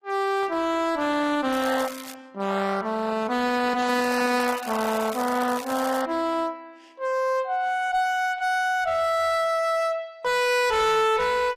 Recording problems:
lossy codec; AAC, log-spectral distance 3 dB, nothing above 15.1 kHz
distortion; hard clipping, signal-to-distortion ratio 6 dB
crackle; at 1.5 s and from 4 to 6 s; loose cable, SNR 15 dB

